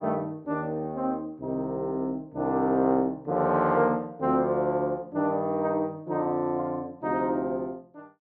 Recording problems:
none

